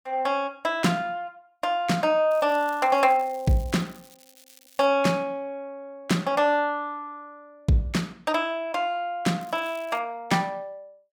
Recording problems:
crackle; from 2.5 to 5 s and at 9.5 s; loose cable, SNR 26 dB

